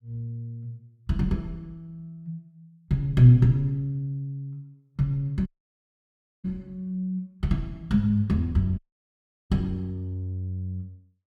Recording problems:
audio cutting out; at 5.5 s for 1 s and at 9 s for 0.5 s

